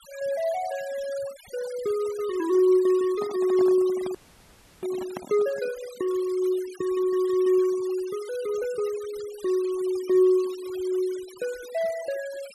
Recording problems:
noise reduction artefacts; signal-to-artefact ratio 20 dB
handling noise; from 3 to 5.5 s; peak -7 dB vs average level
frozen audio; at 4 s for 0.5 s

